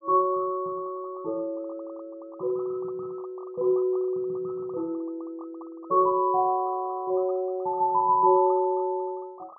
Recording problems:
crackle; vinyl, SNR 27 dB

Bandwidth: 1.5 kHz